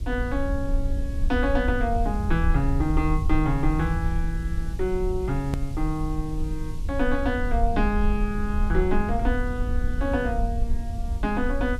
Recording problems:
hiss; SNR 24 dB
low-frequency rumble; below 62 Hz, SNR 2 dB
click at an edit; at 5.5 s

